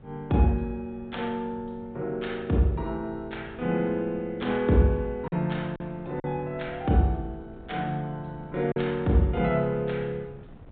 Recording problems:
treble cut off; nothing above 4 kHz
wind on the microphone; below 280 Hz, SNR 20 dB
packet loss; 1.5% of the sound replaced, filled with silence

